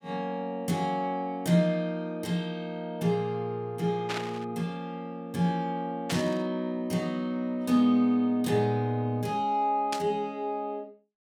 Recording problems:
static burst; at 4 s, at 6 s and at 10 s; peak +1 dB vs average level

